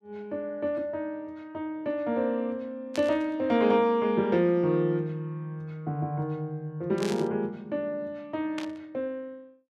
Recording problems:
static burst; at 3 s, at 7 s and at 8.5 s; peak -4 dB vs average level

